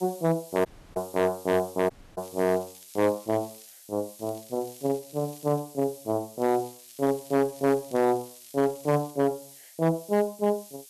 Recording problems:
distortion; hard clipping, signal-to-distortion ratio 11 dB
background hiss; slope +6 dB per octave, SNR 19 dB
audio cutting out; at 0.5 s and at 2 s
crackle; from 2 to 3.5 s, from 4 to 5.5 s and from 6.5 to 9 s; loose cable, SNR 25 dB

